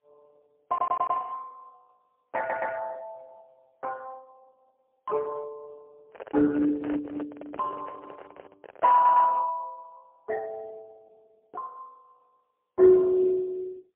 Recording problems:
phone line; 540 Hz to 2.5 kHz, AMR-NB, then MP3
audio stuttering; at 0.5 s, at 2.5 s and at 9 s
microphone handling noise; from 6 to 9.5 s; peak -10 dB vs average level

